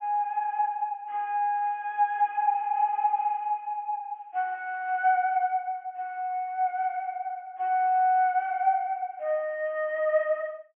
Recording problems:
low-pass filter; nothing above 3.2 kHz

